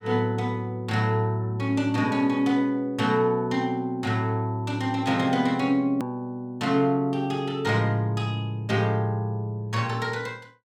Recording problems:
edit click; at 6 s

